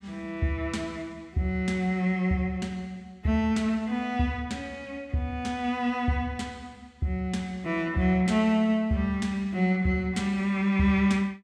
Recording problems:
none

